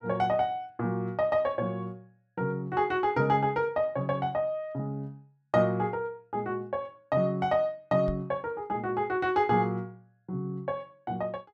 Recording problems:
microphone bump; at 8 s; peak -3 dB vs average level

